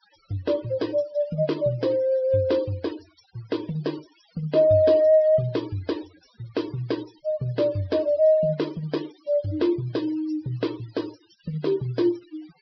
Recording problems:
treble cut off; nothing above 5.5 kHz
noise reduction artefacts; signal-to-artefact ratio 22 dB

